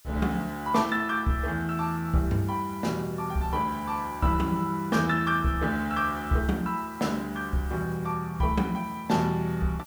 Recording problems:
background hiss; slope +3 dB per octave, SNR 22 dB

